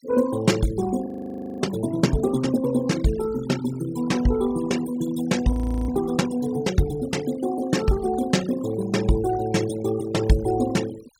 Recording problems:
denoising artefacts; signal-to-artefact ratio 16 dB
frozen audio; at 1 s for 0.5 s and at 5.5 s

